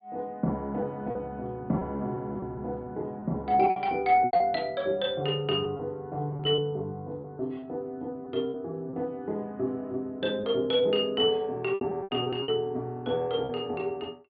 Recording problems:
treble cut off; nothing above 4.5 kHz
lost packets; 7% of the sound replaced, filled with repeated pitch periods

